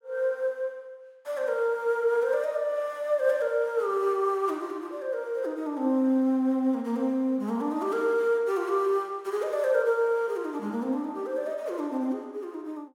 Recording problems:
none

